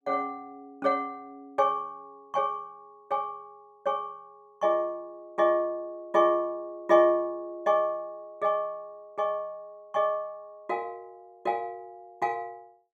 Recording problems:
none

